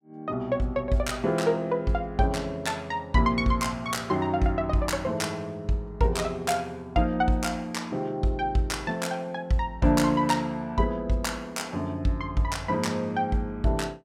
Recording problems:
none

